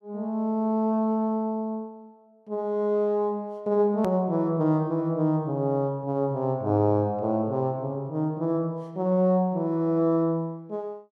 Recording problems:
edit click; at 4 s

